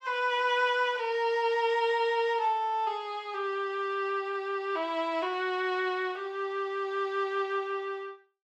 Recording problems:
none

